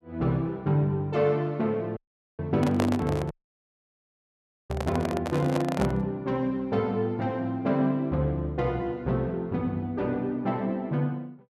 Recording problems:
dropout; at 2 s and at 3.5 s for 1.5 s
handling noise; from 2.5 to 6 s; peak +2 dB vs average level

